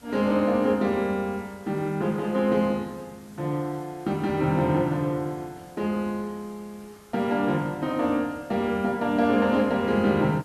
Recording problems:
hiss; slope -3 dB per octave, SNR 27 dB

